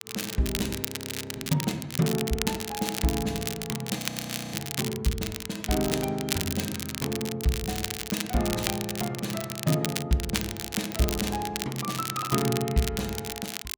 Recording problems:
crackle; vinyl, SNR 3 dB
frozen audio; at 1 s for 0.5 s and at 4 s for 0.5 s

